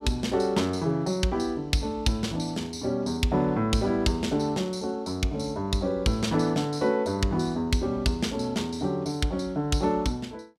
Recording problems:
none

